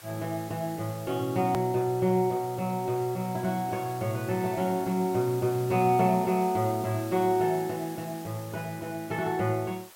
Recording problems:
hiss; slope -1 dB per octave, SNR 18 dB
click at an edit; at 1.5 s

